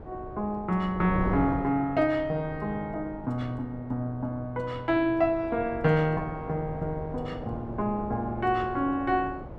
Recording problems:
wind noise; below 480 Hz, SNR 11 dB

